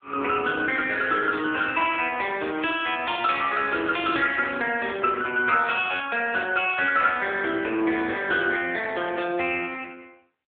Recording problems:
phone line; 260 Hz to 3.5 kHz, AMR-NB

